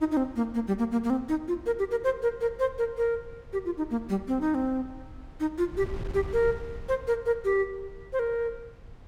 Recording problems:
wind on the microphone; below 130 Hz, SNR 17 dB

